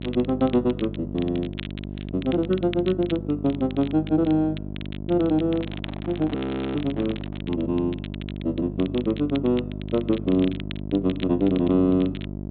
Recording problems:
treble missing; nothing above 4 kHz
hum; 50 Hz, harmonics up to 700 Hz, SNR 9 dB
crackle; vinyl, SNR 18 dB
handling noise; from 5.5 to 7.5 s; peak -10 dB vs average level
audio freezing; at 6.5 s

